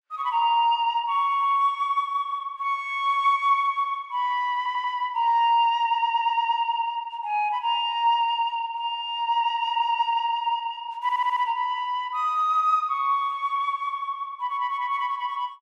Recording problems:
stutter; at 4.5 s, at 6 s and at 11 s

